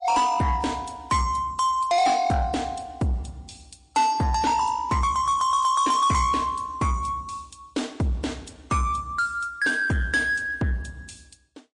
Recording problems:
lossy compression; MP3, log-spectral distance 3 dB, nothing above 8.7 kHz
distorted audio; soft clipping, signal-to-distortion ratio 10 dB

